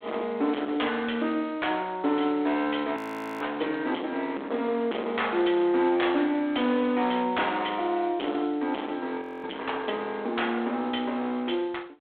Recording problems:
phone line; 220 Hz to 3.5 kHz, G.726
distortion; hard clipping, signal-to-distortion ratio 10 dB
frozen audio; at 3 s and at 9 s

